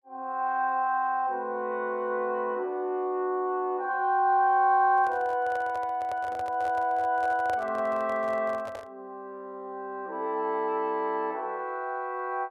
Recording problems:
handling noise; from 5 to 9 s; peak -7 dB vs average level

